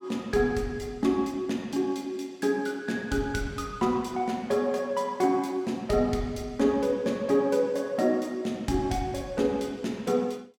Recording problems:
none

